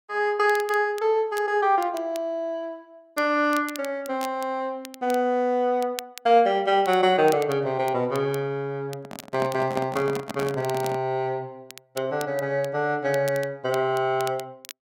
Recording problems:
crackle; vinyl, SNR 19 dB
handling noise; from 9 to 11 s; peak -3 dB vs average level

